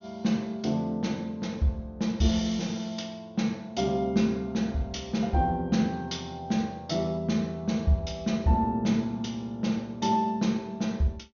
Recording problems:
low-pass filter; nothing above 6.6 kHz

